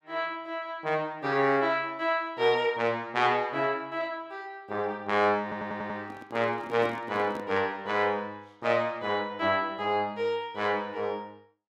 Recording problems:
stutter; at 5.5 s
microphone handling noise; from 6 to 7.5 s; peak -6 dB vs average level

